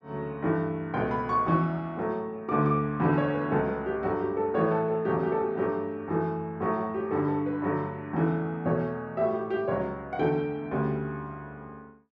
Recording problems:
none

